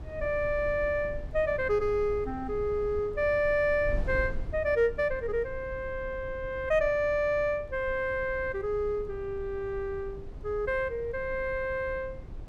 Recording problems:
wind noise; below 86 Hz, SNR 13 dB

